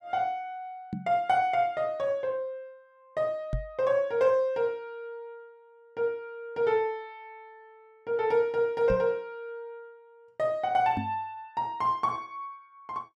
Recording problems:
microphone bump; 4 times, first at 1 s; peak +1 dB vs average level

